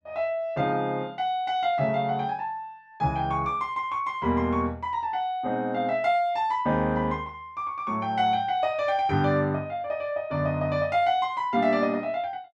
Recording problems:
none

